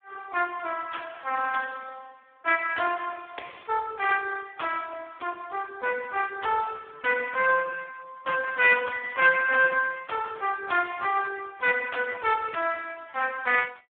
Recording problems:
phone line; 280 Hz to 3.4 kHz, Speex

